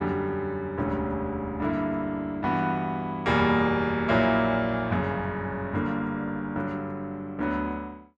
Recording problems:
none

